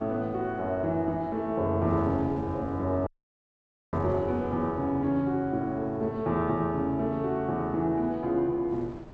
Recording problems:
low-pass filter; nothing above 8 kHz
wind on the microphone; below 510 Hz, SNR 20 dB
audio cutting out; at 3 s for 1 s

